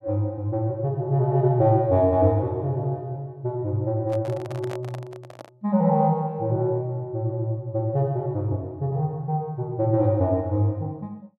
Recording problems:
handling noise; from 4 to 5.5 s; peak -9 dB vs average level

